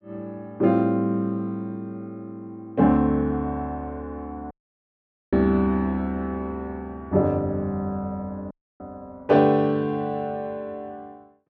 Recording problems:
audio cutting out; at 4.5 s for 1 s and at 8.5 s

